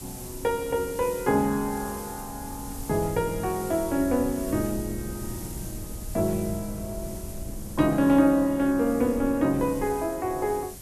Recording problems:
hiss; slope +1 dB per octave, SNR 16 dB
wind noise; below 160 Hz, SNR 15 dB

